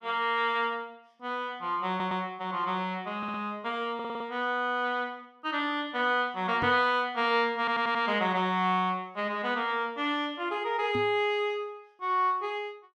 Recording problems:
stutter; 4 times, first at 2 s
knock on the microphone; at 6.5 s and at 11 s; peak -3 dB vs average level

